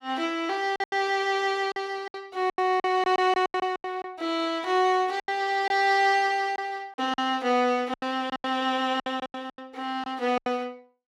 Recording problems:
packet loss; 12% of the sound replaced, filled with silence

